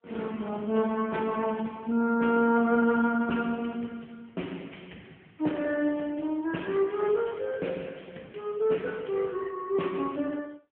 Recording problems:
phone line; 170 Hz to 3.3 kHz, AMR-NB

